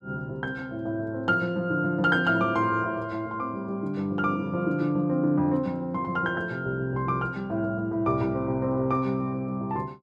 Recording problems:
none

